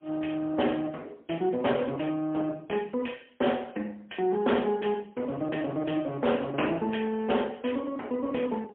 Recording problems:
telephone audio; 240 Hz to 3.3 kHz, AMR-NB, then MP3
distortion; hard clipping, uneven, signal-to-distortion ratio 14 dB

